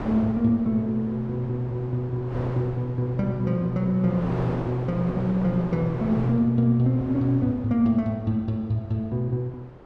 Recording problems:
wind noise; below 750 Hz, SNR 12 dB

